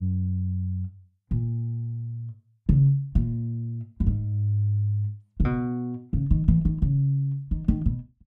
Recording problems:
none

